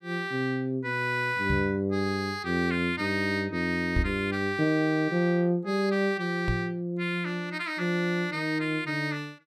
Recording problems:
microphone bump; at 1.5 s, at 4 s and at 6.5 s; peak +3 dB vs average level

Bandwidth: 14.5 kHz